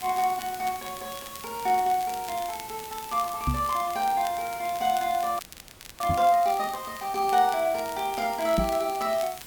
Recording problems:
hiss; slope -1 dB per octave, SNR 15 dB
crackling; vinyl, SNR 18 dB
microphone bump; at 3.5 s, at 6 s and at 8.5 s; peak +3 dB vs average level
audio freezing; at 5.5 s for 0.5 s

